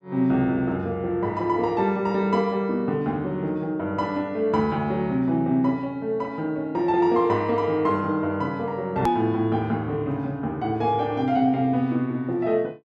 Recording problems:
click at an edit; at 9 s

